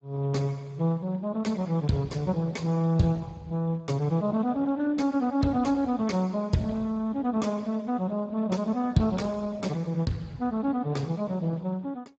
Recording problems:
codec artefacts; Speex, log-spectral distance 3 dB, nothing above 7.3 kHz

